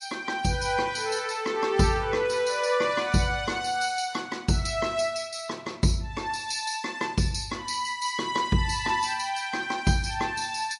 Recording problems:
codec artefacts; MP3, log-spectral distance 3 dB, nothing above 10.7 kHz

